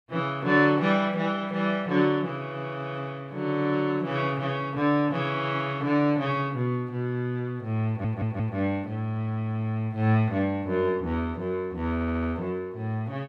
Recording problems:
audio stuttering; at 8 s and at 12 s

